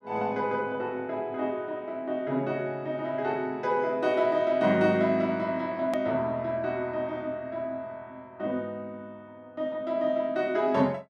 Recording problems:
edit click; at 6 s

